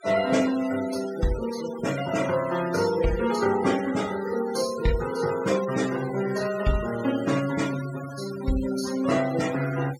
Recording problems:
denoising artefacts; signal-to-artefact ratio 13 dB

